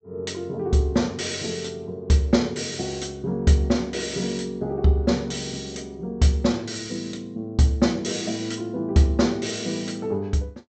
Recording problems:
treble missing; nothing above 8 kHz

